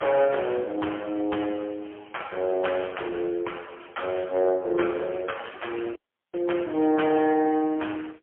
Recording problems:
phone line; 260 Hz to 3.3 kHz, AMR-NB, then MP3
audio cutting out; at 6 s

